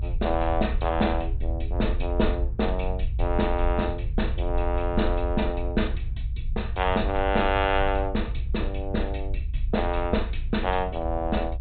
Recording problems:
treble cut off; nothing above 4 kHz
rumble; below 60 Hz, SNR 3 dB

